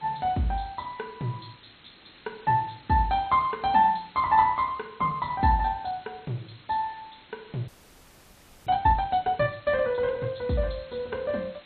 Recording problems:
codec artefacts; MP2, log-spectral distance 10 dB, nothing above 4.1 kHz
background hiss; SNR 25 dB
audio freezing; at 7.5 s for 1 s

